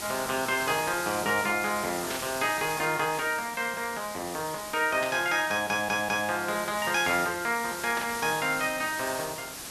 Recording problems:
background hiss; slope -1 dB per octave, SNR 9 dB
burst of static; at 2 s, at 5 s and at 8 s; peak -4 dB vs average level
stutter; at 5.5 s

